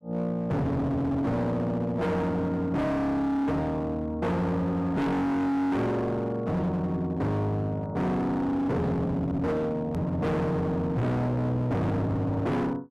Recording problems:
distorted audio; hard clipping, signal-to-distortion ratio 6 dB
hard cut with a click; at 10 s

